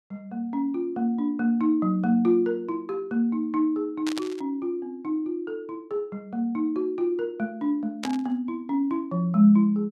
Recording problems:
burst of static; at 4 s and at 8 s; peak -3 dB vs average level

